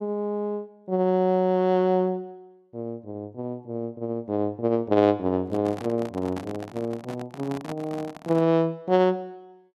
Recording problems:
handling noise; from 5.5 to 8.5 s; peak -7 dB vs average level

